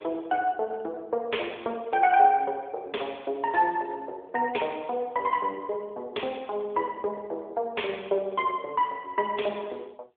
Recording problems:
phone line; 320 Hz to 3.5 kHz, AMR-NB

